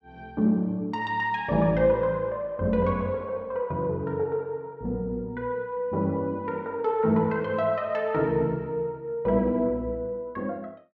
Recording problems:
none

